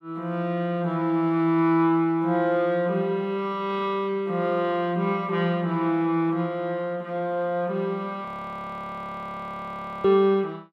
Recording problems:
audio freezing; at 8.5 s for 2 s

